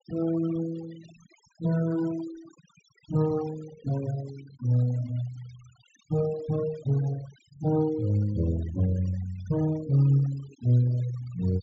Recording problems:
low-pass filter; nothing above 8 kHz
denoising artefacts; signal-to-artefact ratio 19 dB

